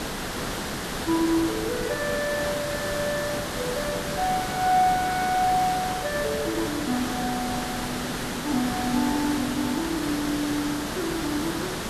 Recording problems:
hiss; slope -4 dB per octave, SNR 3 dB

